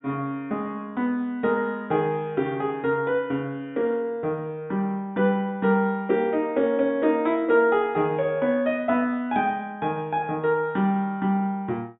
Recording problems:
treble missing; nothing above 4 kHz

